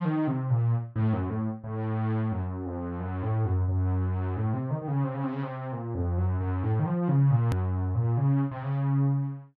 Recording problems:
edit click; at 7.5 s

